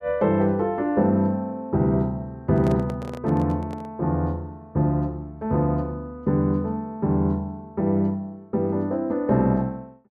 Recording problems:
handling noise; from 2.5 to 4 s; peak -7 dB vs average level

